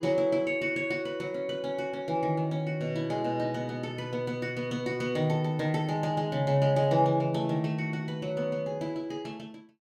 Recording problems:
none

